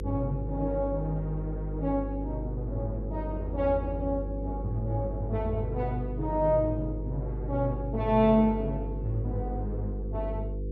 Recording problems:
hum; 50 Hz, harmonics up to 500 Hz, SNR 5 dB

